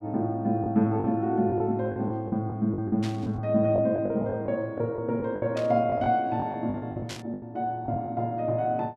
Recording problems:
packet loss; 11% of the sound replaced, filled with the last packet
static burst; at 3 s, at 5.5 s and at 7 s; peak -7 dB vs average level

